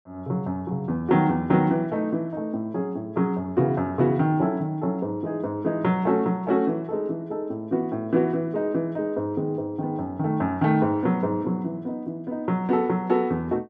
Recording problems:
none

